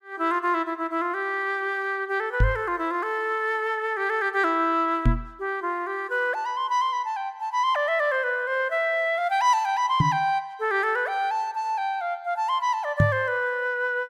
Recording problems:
microphone thump; 4 times, first at 2.5 s; peak +8 dB vs average level

